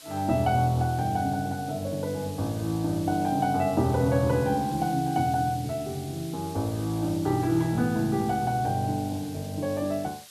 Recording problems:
hiss; slope +2 dB per octave, SNR 18 dB

